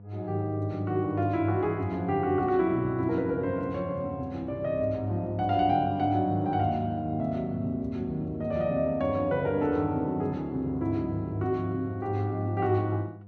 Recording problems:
mains hum; 50 Hz, harmonics up to 700 Hz, SNR 20 dB

